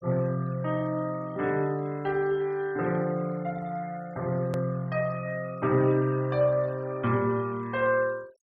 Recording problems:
denoising artefacts; signal-to-artefact ratio 25 dB
hard cut with a click; at 4.5 s

